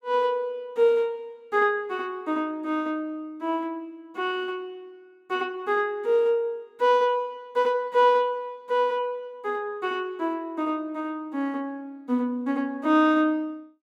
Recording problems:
none

